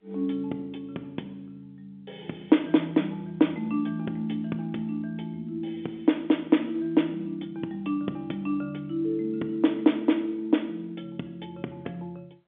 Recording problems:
phone line; 190 Hz to 3.5 kHz, G.711

